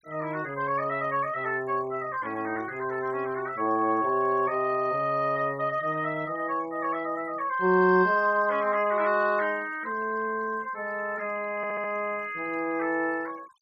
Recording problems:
noise reduction artefacts; signal-to-artefact ratio 25 dB
audio stuttering; at 12 s

